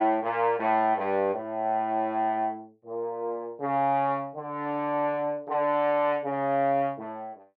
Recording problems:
none

